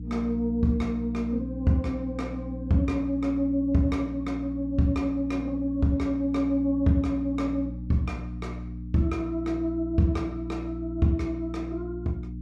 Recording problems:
hum; 60 Hz, harmonics up to 300 Hz, SNR 9 dB

